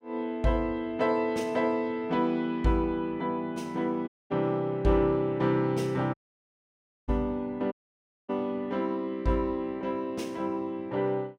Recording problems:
dropout; at 4 s, at 6 s for 1 s and at 7.5 s for 0.5 s

